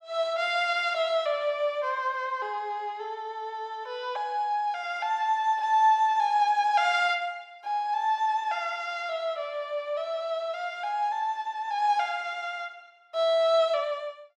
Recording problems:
none

